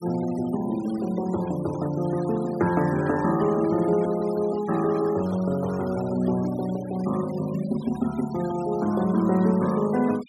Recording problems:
noise reduction artefacts; signal-to-artefact ratio 19 dB

